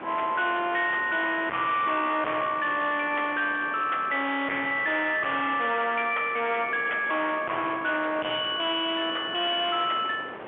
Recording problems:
phone line; 340 Hz to 3.5 kHz, G.711
distortion; hard clipping, uneven, signal-to-distortion ratio 6 dB
wind on the microphone; below 1.8 kHz, SNR 15 dB

